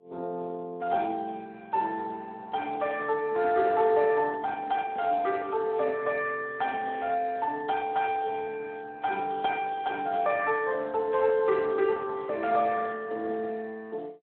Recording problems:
telephone audio; 260 Hz to 4 kHz, Speex
microphone handling noise; from 3 to 5.5 s; peak -12 dB vs average level

